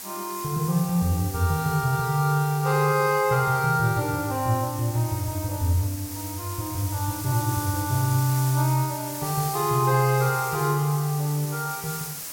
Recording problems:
background hiss; SNR 10 dB

